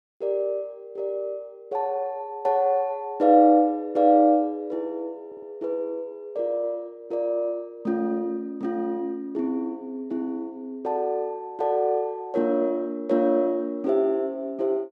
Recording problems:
audio stuttering; at 5.5 s

